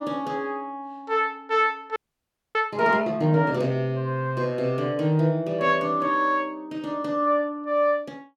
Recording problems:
audio freezing; at 2 s for 0.5 s

